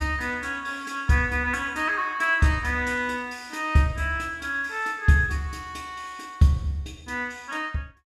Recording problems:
none

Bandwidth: 14.5 kHz